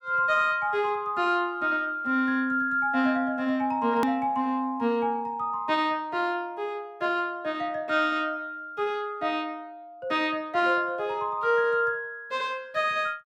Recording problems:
click at an edit; at 4 s

